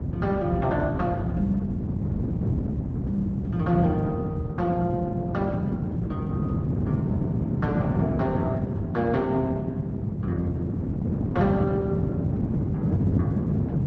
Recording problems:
lossy compression; Opus, log-spectral distance 2 dB
wind noise; below 250 Hz, SNR -2 dB

